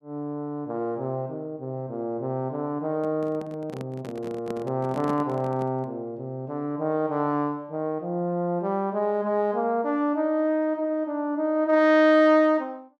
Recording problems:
microphone handling noise; from 3 to 6 s; peak -6 dB vs average level

